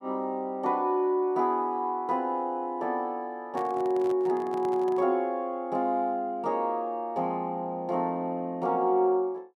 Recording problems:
microphone handling noise; from 3.5 to 5 s; peak -10 dB vs average level

